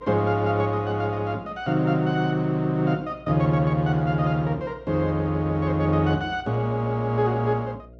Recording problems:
hum; 60 Hz, harmonics up to 660 Hz, SNR 25 dB

